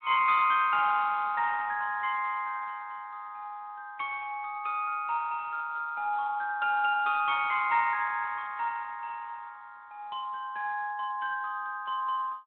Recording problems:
telephone audio; 280 Hz to 3.6 kHz, Speex

